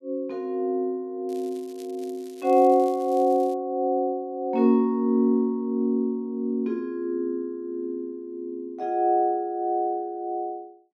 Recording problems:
crackle; from 1.5 to 3.5 s; loose cable, SNR 27 dB

